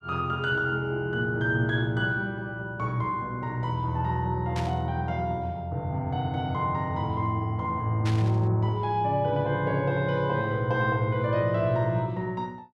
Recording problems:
static burst; at 4.5 s and at 8 s; peak -5 dB vs average level

